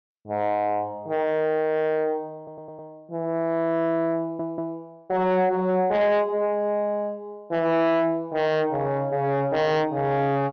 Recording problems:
low-pass filter; nothing above 6.4 kHz
distortion; soft clipping, signal-to-distortion ratio 8 dB
stutter; at 2.5 s and at 4 s

